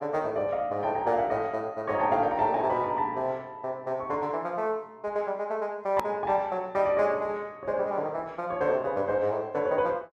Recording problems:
hard cut with a click; at 6 s

